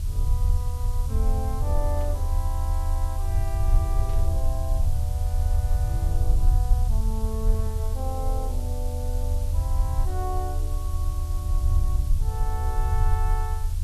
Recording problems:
hiss; SNR 9 dB
low-frequency rumble; below 78 Hz, strongest tone 30 Hz, SNR -11 dB
burst of static; at 2 s and at 4 s; peak -9 dB vs average level

